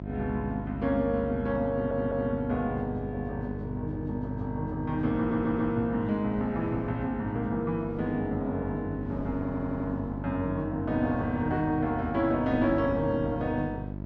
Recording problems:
hum; 50 Hz, harmonics up to 950 Hz, SNR 9 dB
wind noise; below 520 Hz, SNR 19 dB
audio stuttering; at 1.5 s, at 5 s and at 9.5 s

